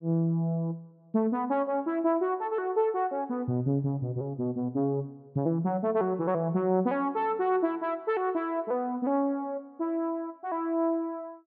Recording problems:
treble cut off; nothing above 5.5 kHz

